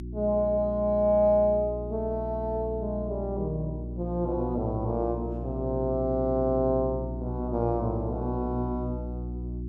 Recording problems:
electrical hum; 60 Hz, harmonics up to 360 Hz, SNR 8 dB

